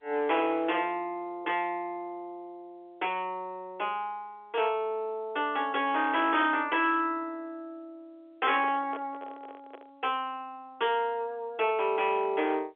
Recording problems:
phone line; 300 Hz to 3.4 kHz, G.711
distortion; hard clipping, signal-to-distortion ratio 12 dB
handling noise; from 8.5 to 10 s; peak -7 dB vs average level

